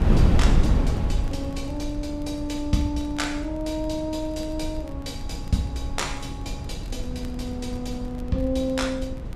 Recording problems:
wind noise; below 140 Hz, SNR 0 dB
crackle; vinyl, SNR 27 dB

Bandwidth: 14 kHz